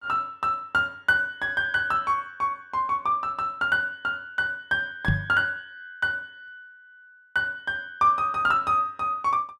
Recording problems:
microphone thump; at 5 s; peak +4 dB vs average level

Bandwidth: 14 kHz